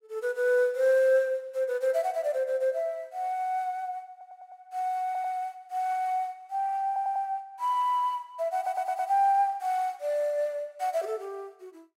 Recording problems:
stutter; 4 times, first at 4 s

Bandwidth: 16 kHz